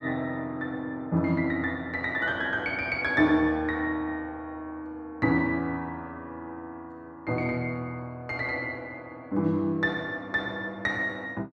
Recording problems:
none

